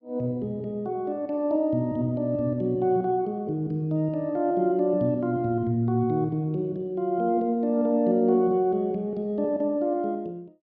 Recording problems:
none

